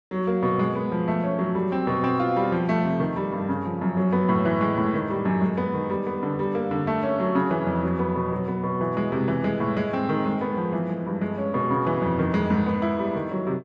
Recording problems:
none

